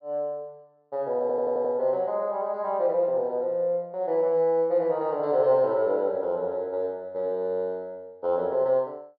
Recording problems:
treble cut off; nothing above 5.5 kHz
stutter; at 1 s

